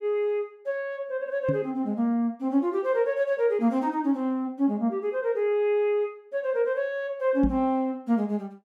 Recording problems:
microphone thump; at 1.5 s and at 7.5 s; peak +2 dB vs average level

